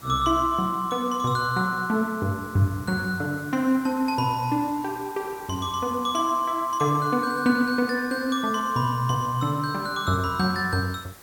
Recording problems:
background hiss; SNR 21 dB

